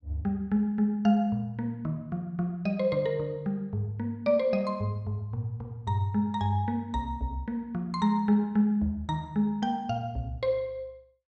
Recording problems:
none

